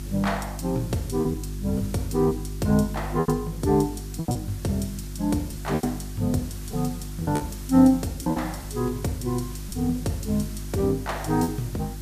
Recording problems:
electrical hum; 50 Hz, harmonics up to 350 Hz, SNR 10 dB
hiss; slope -1 dB per octave, SNR 18 dB
packet loss; 6% of the sound replaced, filled with repeated pitch periods

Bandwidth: 14.5 kHz